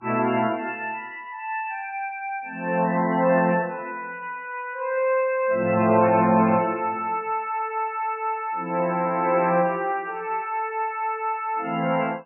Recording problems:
codec artefacts; MP3, log-spectral distance 3 dB, nothing above 2.4 kHz

